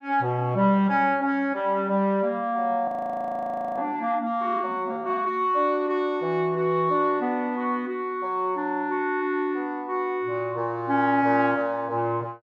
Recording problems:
audio freezing; at 3 s for 1 s

